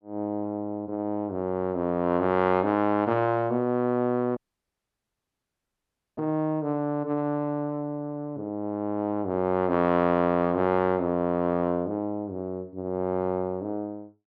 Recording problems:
audio cutting out; at 4.5 s for 2 s

